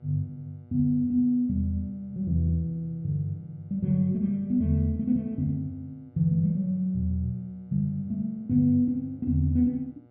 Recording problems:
hum; 60 Hz, harmonics up to 1.4 kHz, SNR 30 dB

